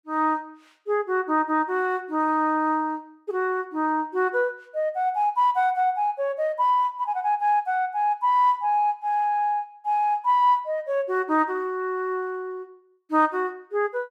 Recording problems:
none

